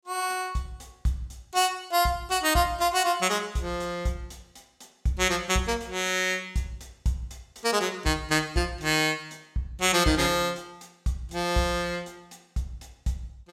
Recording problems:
none

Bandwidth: 16 kHz